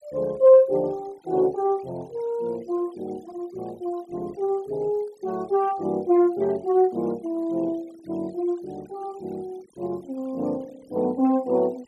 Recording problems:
noise reduction artefacts; signal-to-artefact ratio 28 dB

